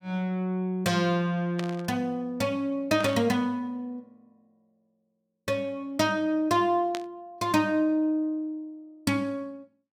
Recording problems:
static burst; at 1.5 s, at 3 s and at 7 s; peak -4 dB vs average level

